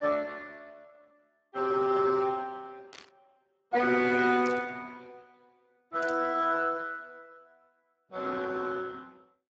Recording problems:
lossy compression; Speex, log-spectral distance 4 dB, nothing above 7.6 kHz
static burst; at 3 s, at 4.5 s and at 6 s; peak -13 dB vs average level

